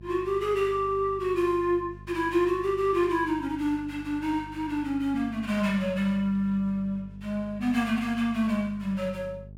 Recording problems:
hum; 50 Hz, harmonics up to 450 Hz, SNR 18 dB

